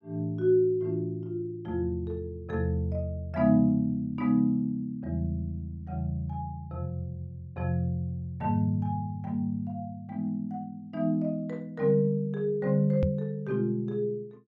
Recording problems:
microphone bump; at 13 s; peak +5 dB vs average level

